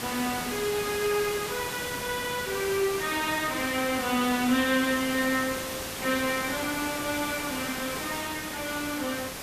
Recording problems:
background hiss; slope -2 dB per octave, SNR 5 dB

